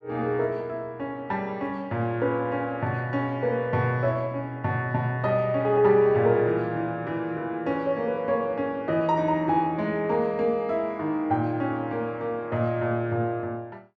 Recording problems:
none

